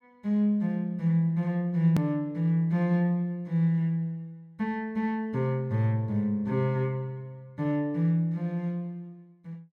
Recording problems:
hard cut with a click; at 2 s

